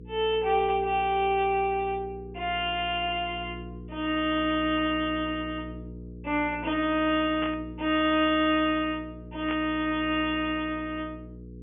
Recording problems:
low-pass filter; nothing above 3.3 kHz
hum; 60 Hz, harmonics up to 480 Hz, SNR 15 dB
static burst; at 7.5 s and at 9.5 s; peak -5 dB vs average level

